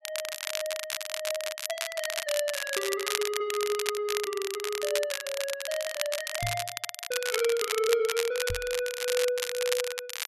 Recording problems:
crackle; vinyl, SNR 2 dB
microphone thump; at 6.5 s and at 8.5 s; peak 0 dB vs average level

